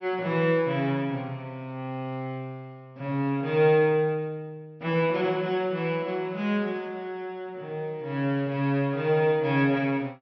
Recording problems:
treble cut off; nothing above 5.9 kHz

